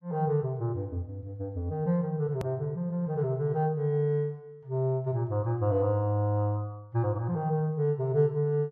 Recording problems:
hard cut with a click; at 2.5 s

